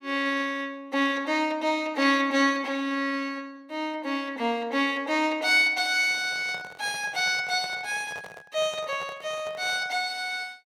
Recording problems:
microphone handling noise; from 6 to 10 s; peak -12 dB vs average level

